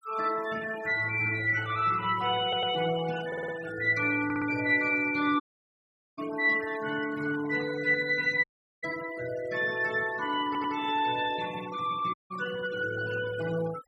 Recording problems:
noise reduction artefacts; signal-to-artefact ratio 16 dB
audio stuttering; 4 times, first at 2.5 s
audio cutting out; at 5.5 s for 1 s, at 8.5 s and at 12 s

